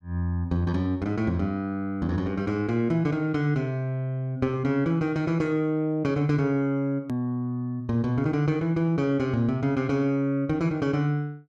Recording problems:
edit click; at 7 s

